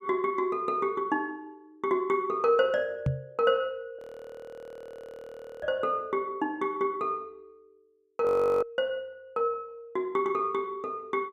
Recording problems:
microphone thump; at 3 s and at 5.5 s; peak +5 dB vs average level
frozen audio; at 4 s for 1.5 s and at 8.5 s

